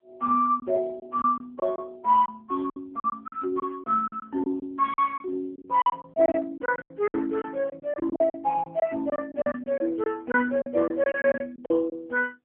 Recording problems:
phone line; 260 Hz to 2.3 kHz, AMR-NB
packet loss; 13% of the sound replaced, filled with silence

